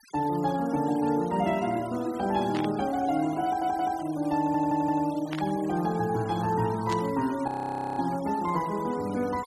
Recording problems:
noise reduction artefacts; signal-to-artefact ratio 19 dB
static burst; at 2.5 s, at 5.5 s and at 7 s; peak -5 dB vs average level
stutter; at 3.5 s and at 4.5 s
frozen audio; at 7.5 s for 0.5 s

